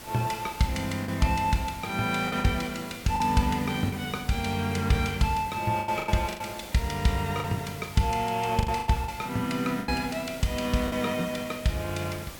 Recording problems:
hiss; slope -3 dB per octave, SNR 15 dB
lost packets; 7% of the sound replaced, filled with the last packet

